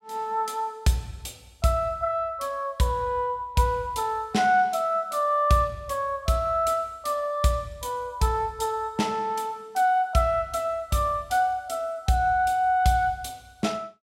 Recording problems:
none

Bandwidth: 16.5 kHz